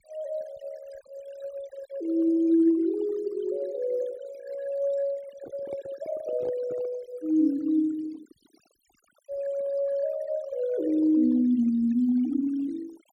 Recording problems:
noise reduction artefacts; signal-to-artefact ratio 22 dB
microphone handling noise; from 5.5 to 7 s; peak -9 dB vs average level

